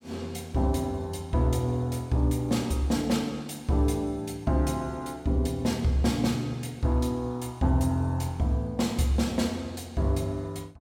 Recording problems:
none

